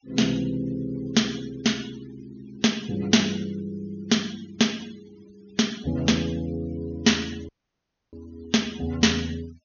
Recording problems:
treble missing; nothing above 6.7 kHz
denoising artefacts; signal-to-artefact ratio 21 dB
dropout; at 7.5 s for 0.5 s

